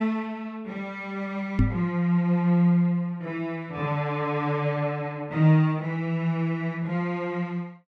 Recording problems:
knock on the microphone; at 1.5 s; peak +7 dB vs average level

